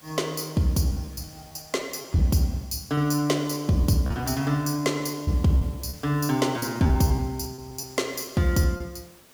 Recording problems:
background hiss; slope -3 dB per octave, SNR 25 dB
lost packets; 8% of the sound replaced, filled with repeated pitch periods

